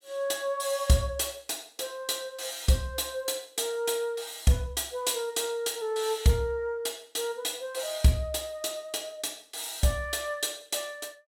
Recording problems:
none

